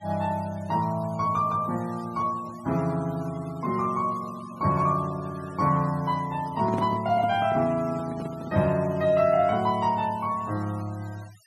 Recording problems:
denoising artefacts; signal-to-artefact ratio 22 dB
handling noise; from 6.5 to 8.5 s; peak -1 dB vs average level

